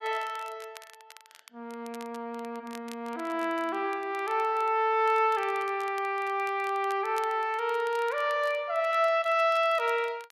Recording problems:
crackling; vinyl, SNR 24 dB

